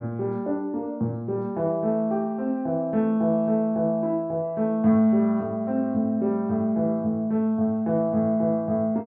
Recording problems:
none

